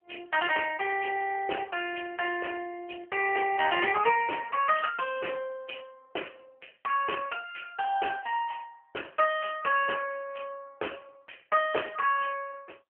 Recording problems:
telephone audio; 320 Hz to 3.1 kHz, AMR-NB

